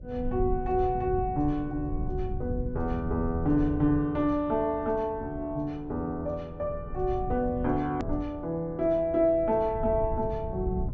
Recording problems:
low-pass filter; nothing above 8 kHz
electrical hum; 60 Hz, harmonics up to 600 Hz, SNR 24 dB
low-frequency rumble; below 110 Hz, SNR 9 dB
edit click; at 8 s

